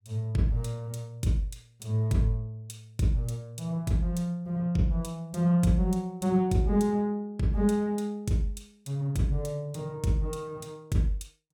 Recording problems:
none

